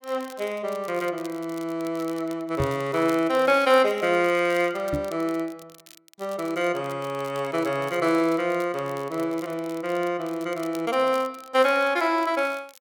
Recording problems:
crackle; vinyl, SNR 23 dB
microphone bump; at 2.5 s and at 5 s; peak 0 dB vs average level

